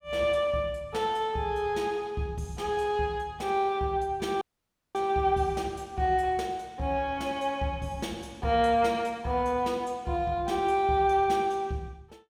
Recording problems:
dropout; at 4.5 s for 0.5 s

